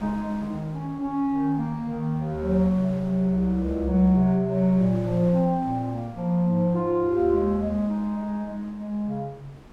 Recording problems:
wind noise; below 710 Hz, SNR 21 dB

